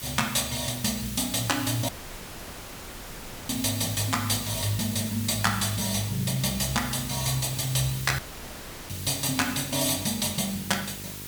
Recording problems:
hum; 50 Hz, harmonics up to 1 kHz, SNR 17 dB
background hiss; slope +1 dB per octave, SNR 9 dB
audio cutting out; at 2 s for 1.5 s and at 8 s for 0.5 s
crackle; from 4.5 to 6 s; loose cable, SNR 24 dB

